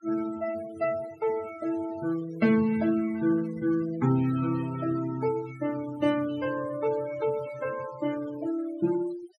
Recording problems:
noise reduction artefacts; signal-to-artefact ratio 15 dB

